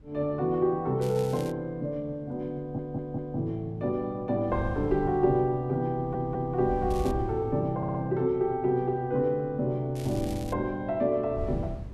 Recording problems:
wind on the microphone; below 130 Hz, SNR 11 dB
crackling; at 1 s, at 7 s and at 10 s; loose cable, SNR 19 dB
stutter; at 2.5 s, at 6 s and at 8 s

